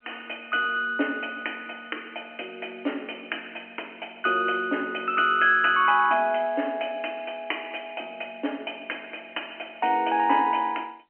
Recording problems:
phone line; 260 Hz to 3.1 kHz, G.711

